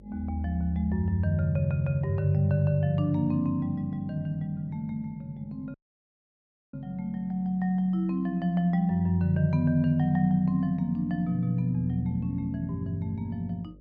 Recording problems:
hum; 50 Hz, harmonics up to 600 Hz, SNR 26 dB
dropout; at 5.5 s for 1 s

